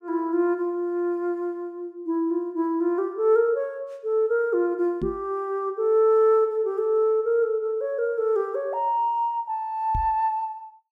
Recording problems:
microphone thump; at 5 s and at 10 s; peak -3 dB vs average level

